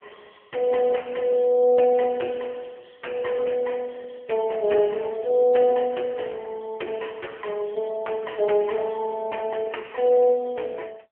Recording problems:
phone line; 300 Hz to 3.1 kHz, AMR-NB

